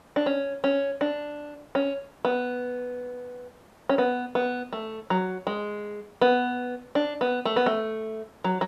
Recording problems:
background hiss; SNR 27 dB

